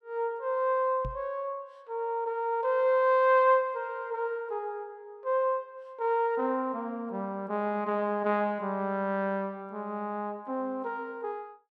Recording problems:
knock on the microphone; at 1 s; peak -5 dB vs average level

